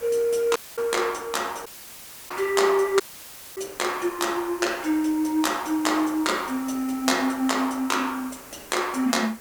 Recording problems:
hiss; SNR 18 dB
audio cutting out; at 0.5 s, at 1.5 s for 0.5 s and at 3 s for 0.5 s

